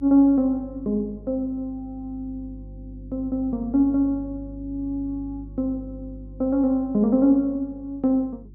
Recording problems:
hum; 50 Hz, harmonics up to 350 Hz, SNR 18 dB

